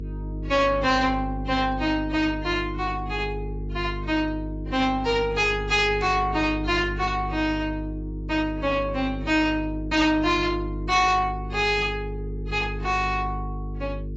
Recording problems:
codec artefacts; AAC, log-spectral distance 2 dB, nothing above 7.6 kHz
distorted audio; soft clipping, signal-to-distortion ratio 12 dB
electrical hum; 50 Hz, harmonics up to 450 Hz, SNR 9 dB

